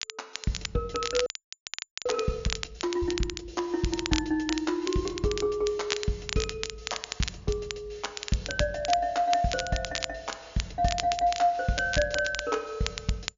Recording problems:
treble missing; nothing above 7.1 kHz
crackling; vinyl, SNR 6 dB
frozen audio; at 1.5 s for 1 s

